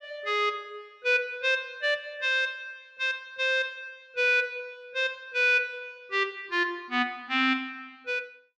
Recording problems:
none

